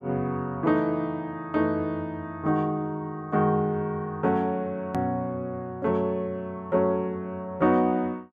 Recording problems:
edit click; at 5 s

